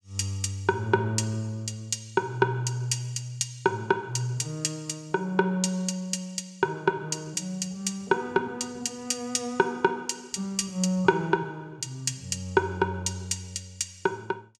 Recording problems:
none

